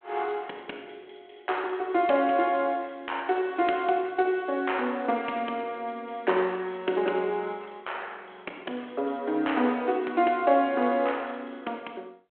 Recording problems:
phone line; 220 Hz to 3.3 kHz, G.726

